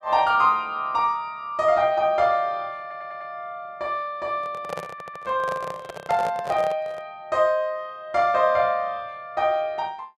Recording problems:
stutter; at 3 s and at 5 s
handling noise; from 4.5 to 7 s; peak -2 dB vs average level

